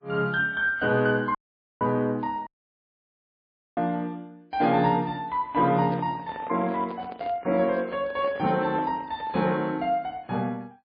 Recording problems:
codec artefacts; MP3, log-spectral distance 2 dB
dropout; at 1.5 s and at 2.5 s for 1.5 s
microphone handling noise; from 5.5 to 9.5 s; peak -6 dB vs average level

